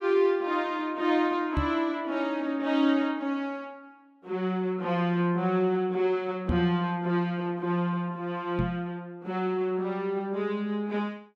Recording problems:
microphone bump; at 1.5 s, at 6.5 s and at 8.5 s; peak +3 dB vs average level

